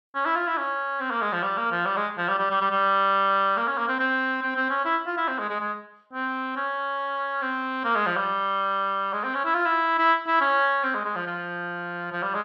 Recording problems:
none

